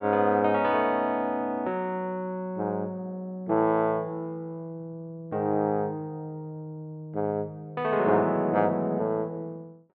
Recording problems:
none

